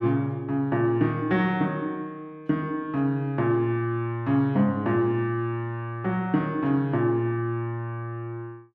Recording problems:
none

